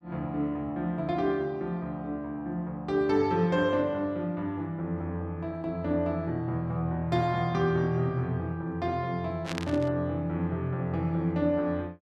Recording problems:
burst of static; at 9.5 s; peak -2 dB vs average level

